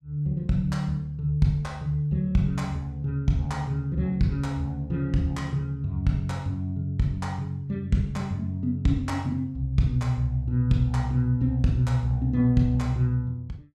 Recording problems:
none

